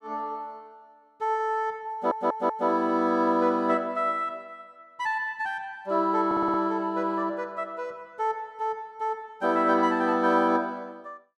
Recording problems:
stutter; at 2 s and at 6.5 s

